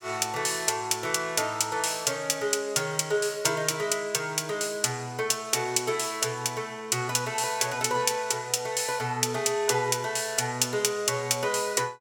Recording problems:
none

